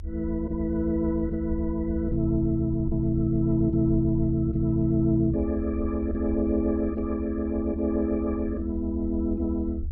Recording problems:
rumble; below 76 Hz, SNR 9 dB

